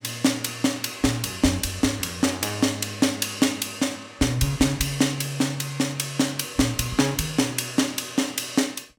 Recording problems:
none

